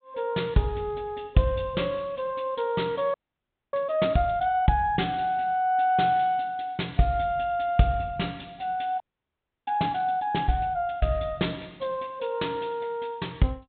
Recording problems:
treble missing; nothing above 4 kHz
audio freezing; at 3 s for 0.5 s and at 9 s for 0.5 s

